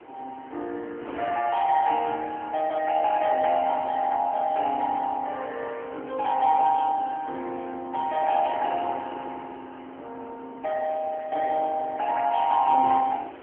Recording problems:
phone line; 260 Hz to 3.2 kHz, AMR-NB
wind noise; below 950 Hz, SNR 19 dB

